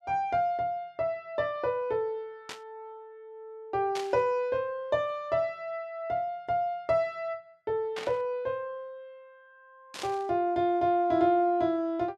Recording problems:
burst of static; 4 times, first at 2.5 s; peak -5 dB vs average level

